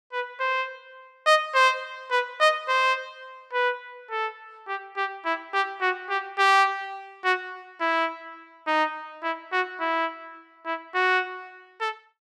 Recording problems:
none

